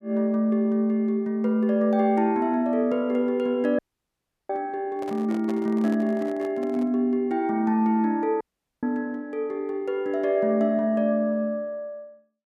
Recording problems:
dropout; at 4 s for 0.5 s and at 8.5 s
microphone handling noise; from 5 to 7 s; peak -10 dB vs average level

